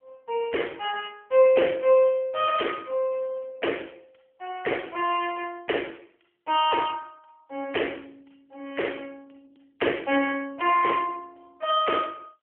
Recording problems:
phone line; 300 Hz to 3.2 kHz, AMR-NB

